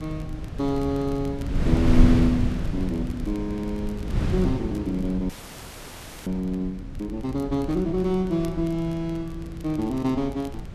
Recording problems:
wind noise; below 140 Hz, SNR 3 dB
crackle; vinyl, SNR 27 dB
frozen audio; at 5.5 s for 1 s

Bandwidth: 13.5 kHz